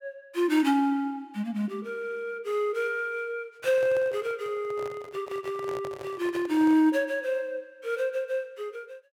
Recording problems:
handling noise; from 3.5 to 7 s; peak -8 dB vs average level

